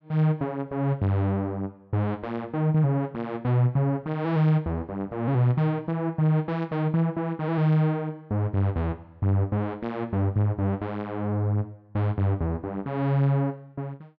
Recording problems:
none

